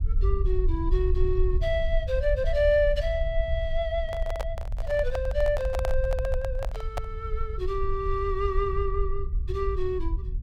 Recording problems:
rumble; below 60 Hz, SNR 2 dB
handling noise; from 4 to 7 s; peak 0 dB vs average level

